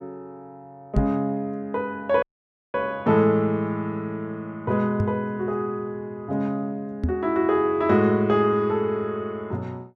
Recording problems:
knock on the microphone; at 1 s, at 5 s and at 7 s; peak +6 dB vs average level
audio cutting out; at 2 s for 0.5 s

